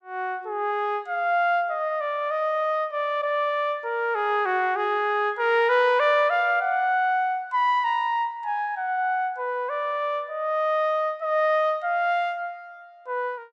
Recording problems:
none

